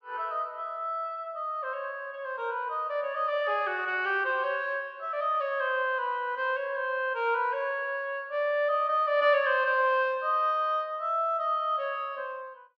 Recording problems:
none

